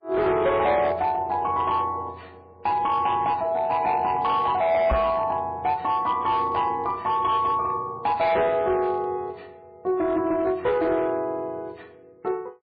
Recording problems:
lossy compression; MP3, log-spectral distance 2 dB, nothing above 4.5 kHz
distorted audio; hard clipping, signal-to-distortion ratio 12 dB
knock on the microphone; at 5 s; peak +3 dB vs average level

